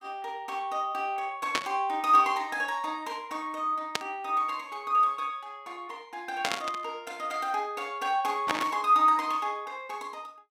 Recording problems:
burst of static; 4 times, first at 1.5 s; peak +5 dB vs average level

